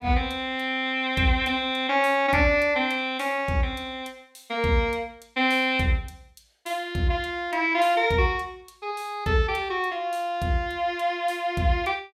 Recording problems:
none

